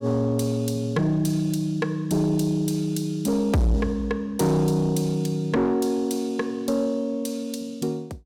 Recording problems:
distortion; soft clipping, signal-to-distortion ratio 10 dB

